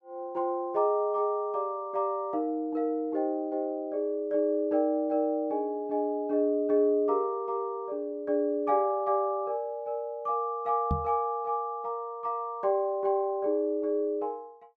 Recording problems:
microphone bump; at 11 s; peak +3 dB vs average level

